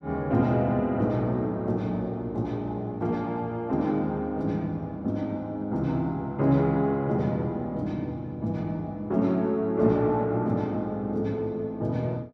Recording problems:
none

